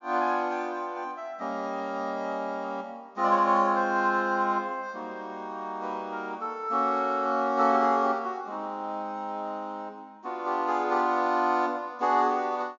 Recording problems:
treble missing; nothing above 7.1 kHz

